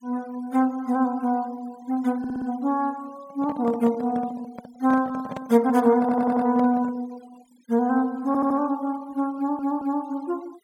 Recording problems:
noise reduction artefacts; signal-to-artefact ratio 24 dB
stutter; 4 times, first at 2 s
microphone handling noise; from 3 to 7 s; peak -6 dB vs average level

